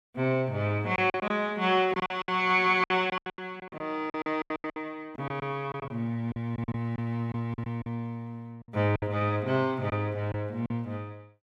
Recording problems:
lost packets; 13% of the sound replaced, filled with silence

